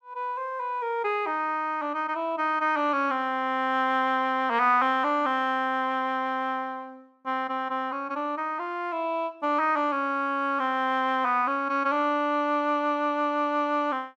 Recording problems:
none

